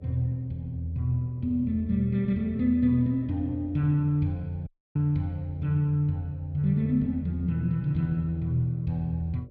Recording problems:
hum; 50 Hz, harmonics up to 600 Hz, SNR 28 dB
dropout; at 4.5 s

